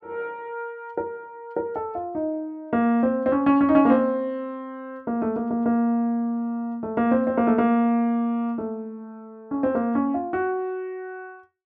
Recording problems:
none

